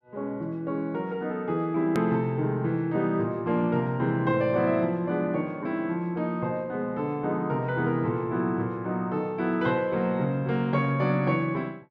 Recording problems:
edit click; at 2 s

